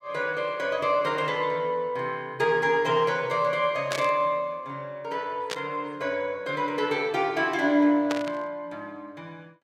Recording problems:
static burst; at 4 s, at 5.5 s and at 8 s; peak -1 dB vs average level

